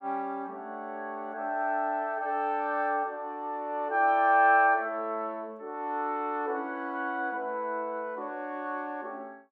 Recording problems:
none

